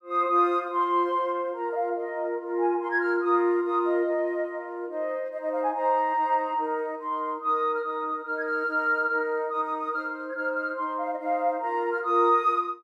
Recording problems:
none

